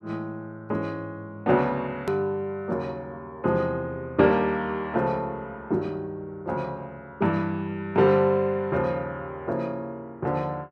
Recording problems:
edit click; at 2 s

